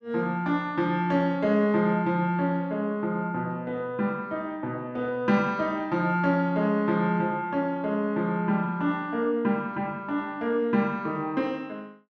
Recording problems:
none

